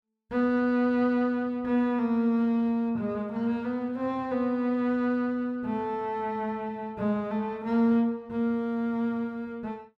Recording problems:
none

